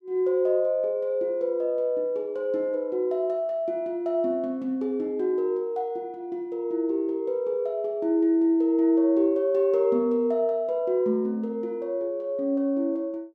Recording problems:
none

